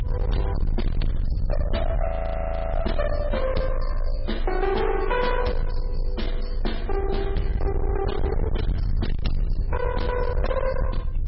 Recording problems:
lossy compression; MP3, log-spectral distance 2 dB, nothing above 5.3 kHz
distorted audio; hard clipping, signal-to-distortion ratio 6 dB
mains hum; 60 Hz, harmonics up to 540 Hz, SNR 21 dB
low-frequency rumble; below 76 Hz, strongest tone 26 Hz, SNR 0 dB
frozen audio; at 2 s for 0.5 s

